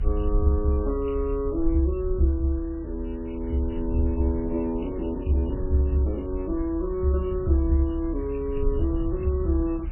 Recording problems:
lossy codec; MP3, log-spectral distance 3 dB, nothing above 2.9 kHz
background hiss; SNR 28 dB
low-frequency rumble; below 68 Hz, strongest tone 38 Hz, SNR 7 dB
wind noise; below 160 Hz, SNR 16 dB

